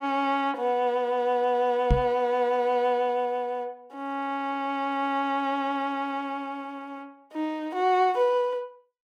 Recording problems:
knock on the microphone; at 2 s; peak +6 dB vs average level

